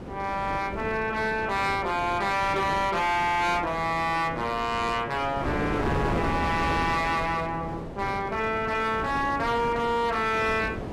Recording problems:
distorted audio; hard clipping, signal-to-distortion ratio 11 dB
wind noise; below 590 Hz, SNR 8 dB

